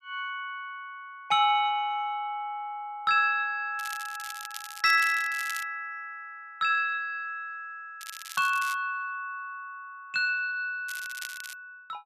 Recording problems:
crackle; from 4 to 5.5 s, at 8 s and at 11 s; loose cable, SNR 13 dB

